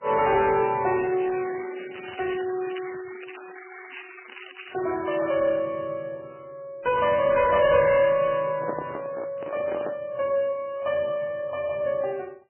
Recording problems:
lossy codec; MP3, then MP3, log-spectral distance 9 dB, nothing above 2.6 kHz
distorted audio; soft clipping, signal-to-distortion ratio 11 dB
crackle; from 1 to 5.5 s; loose cable, SNR 15 dB
handling noise; from 8.5 to 10 s; peak -2 dB vs average level

